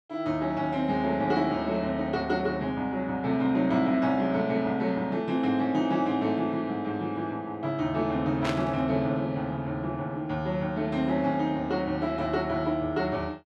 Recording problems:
burst of static; at 8.5 s; peak -2 dB vs average level

